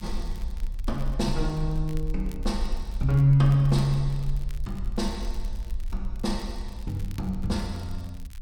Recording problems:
rumble; below 46 Hz, strongest tone 26 Hz, SNR 9 dB
crackling; vinyl, SNR 27 dB

